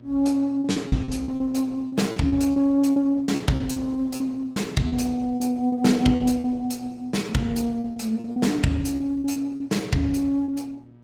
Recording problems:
codec artefacts; Opus, log-spectral distance 3 dB
electrical hum; 60 Hz, harmonics up to 960 Hz, SNR 25 dB
lost packets; 12% of the sound replaced, filled with repeated pitch periods

